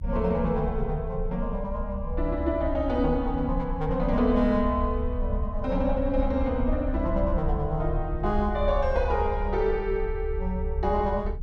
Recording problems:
rumble; below 68 Hz, strongest tone 34 Hz, SNR 5 dB

